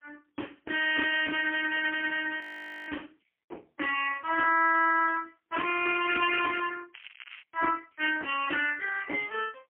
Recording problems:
phone line; 300 Hz to 3.1 kHz, AMR-NB, then MP3
frozen audio; at 2.5 s
crackling; from 5.5 to 6.5 s and at 7 s; loose cable, SNR 19 dB

